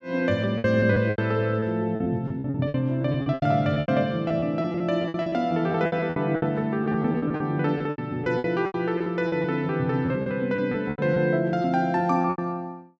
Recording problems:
packet loss; 16% of the sound replaced, filled with repeated pitch periods

